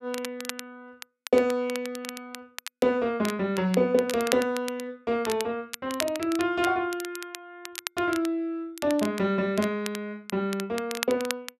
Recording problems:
crackling; vinyl, SNR 11 dB

